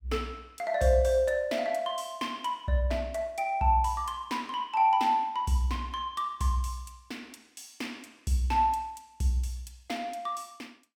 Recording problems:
none

